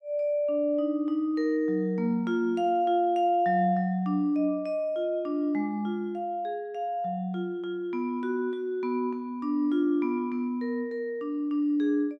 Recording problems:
none

